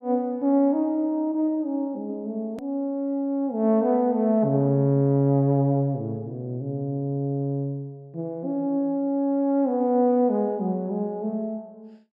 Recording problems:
click at an edit; at 2.5 s

